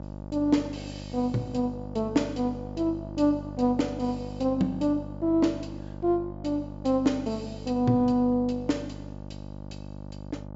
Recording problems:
low-pass filter; nothing above 8 kHz
hum; 50 Hz, harmonics up to 1.1 kHz, SNR 12 dB

